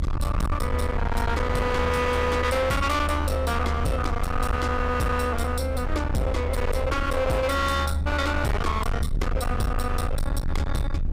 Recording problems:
distorted audio; hard clipping, signal-to-distortion ratio 6 dB
low-frequency rumble; below 110 Hz, SNR 2 dB
wind noise; below 340 Hz, SNR 13 dB

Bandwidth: 15.5 kHz